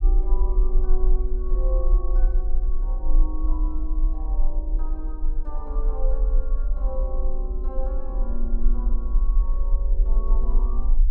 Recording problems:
rumble; below 40 Hz, strongest tone 22 Hz, SNR -12 dB

